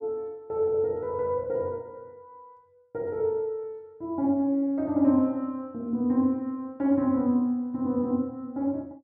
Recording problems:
none

